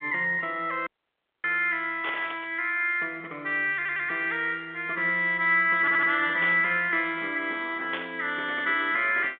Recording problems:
telephone audio; 260 Hz to 3.6 kHz, G.726
dropout; at 1 s for 0.5 s
static burst; at 2 s, at 6.5 s and at 8 s; peak -5 dB vs average level
stutter; at 4 s and at 6 s

